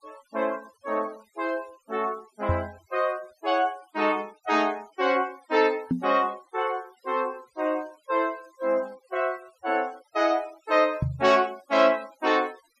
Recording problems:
noise reduction artefacts; signal-to-artefact ratio 25 dB
knock on the microphone; at 2.5 s, at 6 s and at 11 s; peak +4 dB vs average level

